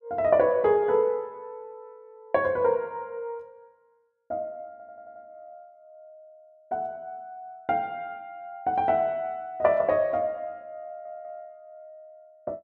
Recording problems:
stutter; at 4.5 s and at 11 s

